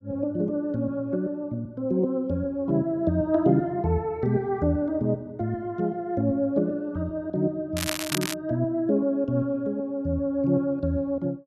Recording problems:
crackle; at 8 s; loose cable, SNR 5 dB

